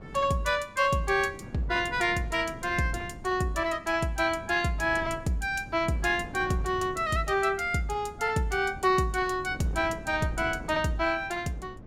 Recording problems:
wind on the microphone; below 310 Hz, SNR 16 dB

